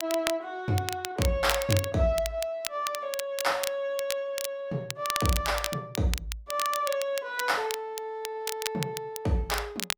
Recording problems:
crackle; vinyl, SNR 6 dB

